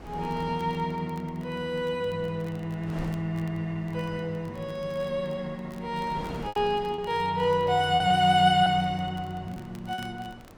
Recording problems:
wind on the microphone; below 680 Hz, SNR 19 dB
crackling; vinyl, SNR 29 dB
packet loss; 3% of the sound replaced, filled with repeated pitch periods

